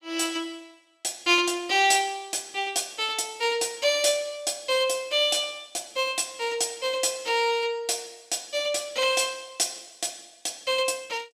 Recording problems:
none

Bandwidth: 15 kHz